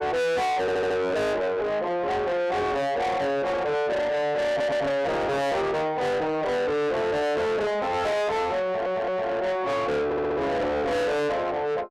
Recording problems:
distorted audio; soft clipping, signal-to-distortion ratio 6 dB
audio stuttering; 4 times, first at 0.5 s

